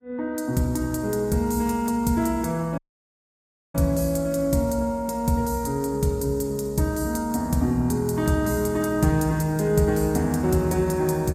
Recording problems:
codec artefacts; Vorbis, log-spectral distance 3 dB, nothing above 13.8 kHz
dropout; at 3 s for 1 s

